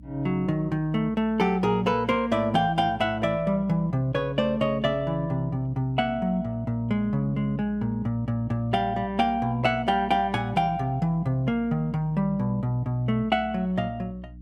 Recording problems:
hum; 60 Hz, harmonics up to 300 Hz, SNR 20 dB

